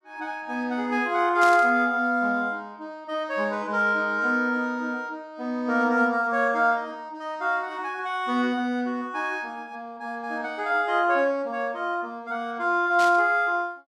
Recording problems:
burst of static; at 1.5 s and at 13 s; peak -6 dB vs average level

